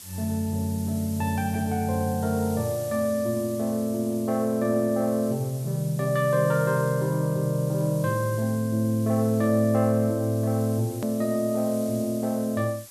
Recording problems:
background hiss; SNR 17 dB
click at an edit; at 11 s

